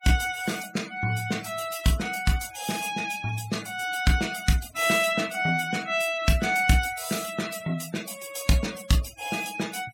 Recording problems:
denoising artefacts; signal-to-artefact ratio 16 dB

